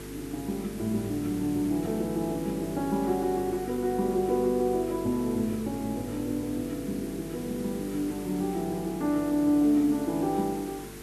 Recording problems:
hum; 50 Hz, harmonics up to 450 Hz, SNR 13 dB
hiss; slope -2 dB per octave, SNR 17 dB

